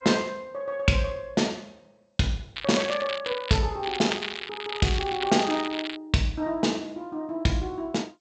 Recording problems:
lossy compression; G.722, log-spectral distance 8 dB, nothing above 7.6 kHz
crackling; from 2.5 to 3.5 s and from 4 to 6 s; loose cable, SNR 7 dB

